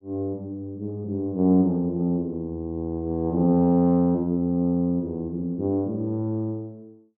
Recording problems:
none

